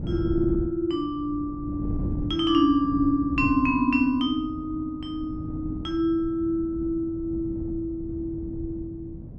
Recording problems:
wind noise; below 190 Hz, SNR 10 dB

